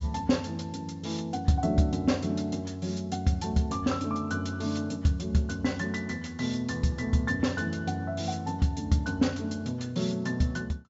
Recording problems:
treble missing; nothing above 8 kHz

